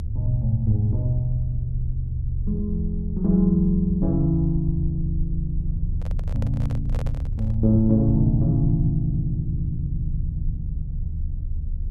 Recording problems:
low-frequency rumble; below 78 Hz, strongest tone 30 Hz, SNR 5 dB
handling noise; from 6 to 7.5 s; peak -9 dB vs average level

